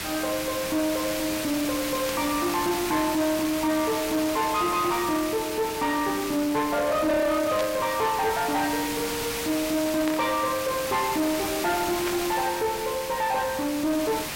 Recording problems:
distorted audio; soft clipping, signal-to-distortion ratio 11 dB
background hiss; slope -1 dB per octave, SNR 5 dB
burst of static; 4 times, first at 2 s; peak -3 dB vs average level

